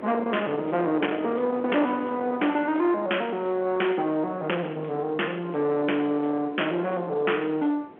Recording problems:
telephone audio; 260 Hz to 3.2 kHz, G.711
distortion; soft clipping, signal-to-distortion ratio 11 dB
wind noise; below 930 Hz, SNR 14 dB

